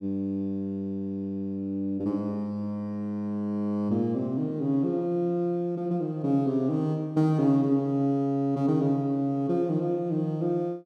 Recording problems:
none

